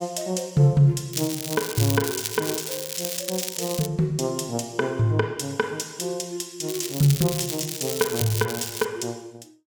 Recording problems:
crackle; from 1 to 4 s and from 6.5 to 9 s; loose cable, SNR 5 dB

